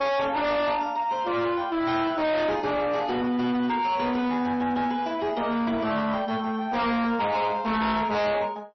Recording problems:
lossy compression; MP3, log-spectral distance 2 dB, nothing above 5.8 kHz
distortion; soft clipping, signal-to-distortion ratio 7 dB

